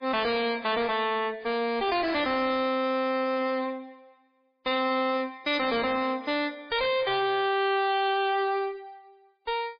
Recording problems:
lossy compression; MP3, log-spectral distance 3 dB, nothing above 5 kHz
distorted audio; hard clipping, uneven, signal-to-distortion ratio 5 dB

